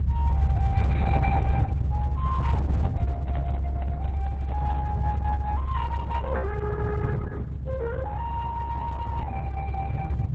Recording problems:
lossy compression; Opus, then Opus, log-spectral distance 2 dB
low-frequency rumble; below 110 Hz, strongest tone 68 Hz, SNR -10 dB
handling noise; from 3 to 5 s; peak -1 dB vs average level

